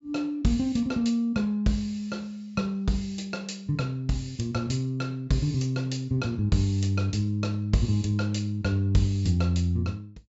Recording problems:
low-pass filter; nothing above 8 kHz

